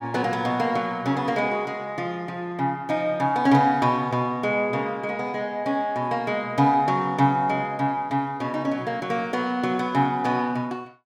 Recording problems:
none

